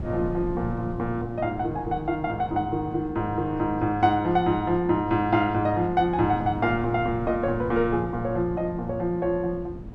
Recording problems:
wind noise; below 240 Hz, SNR 13 dB

